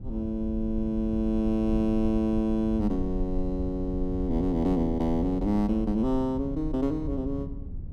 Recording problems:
rumble; below 70 Hz, SNR 9 dB
wind noise; below 200 Hz, SNR 18 dB

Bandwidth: 13.5 kHz